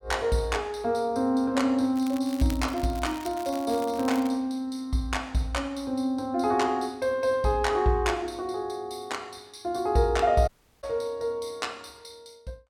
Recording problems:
crackling; from 2 to 4.5 s; loose cable, SNR 17 dB
audio cutting out; at 10 s

